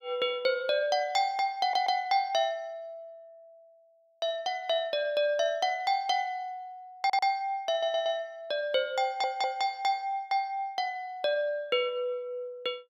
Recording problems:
audio stuttering; 4 times, first at 1.5 s

